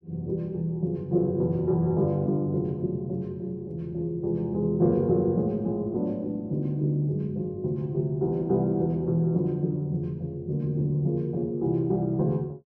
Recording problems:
none

